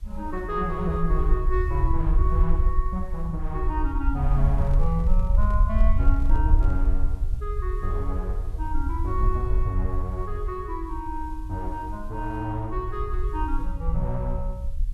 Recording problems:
background hiss; slope -1 dB per octave, SNR 29 dB
rumble; below 58 Hz, SNR -4 dB
handling noise; from 4.5 to 7 s; peak -10 dB vs average level

